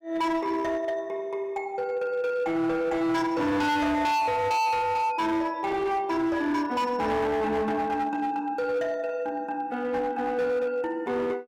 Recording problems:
distortion; hard clipping, signal-to-distortion ratio 7 dB

